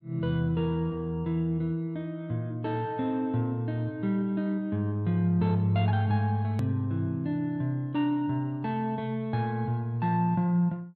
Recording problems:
edit click; at 6.5 s

